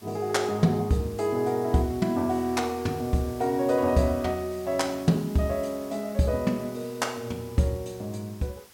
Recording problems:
background hiss; slope -1 dB per octave, SNR 21 dB

